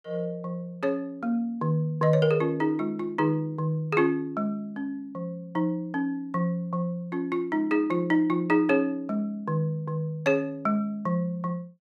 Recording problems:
none

